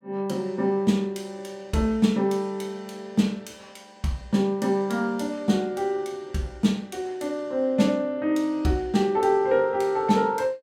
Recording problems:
none

